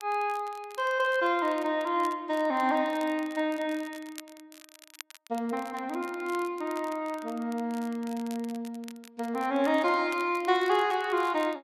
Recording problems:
crackling; vinyl, SNR 21 dB

